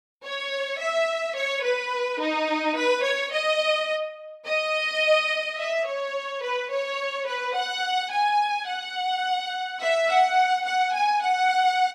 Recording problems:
none

